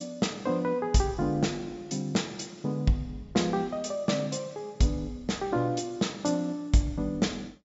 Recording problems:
treble cut off; nothing above 8 kHz

